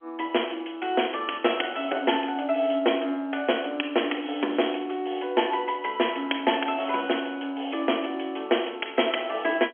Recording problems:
phone line; 240 Hz to 3.3 kHz, G.711

